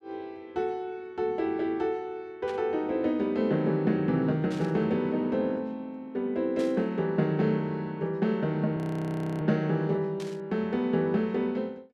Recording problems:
static burst; 4 times, first at 2.5 s; peak -12 dB vs average level
audio freezing; at 9 s for 0.5 s

